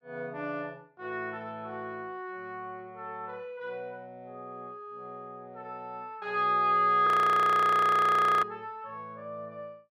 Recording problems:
frozen audio; at 7 s for 1.5 s

